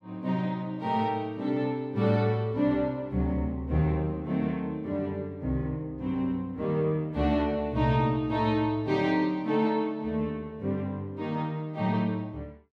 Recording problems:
none

